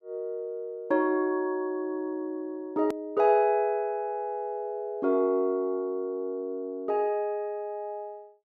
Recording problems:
click at an edit; at 3 s

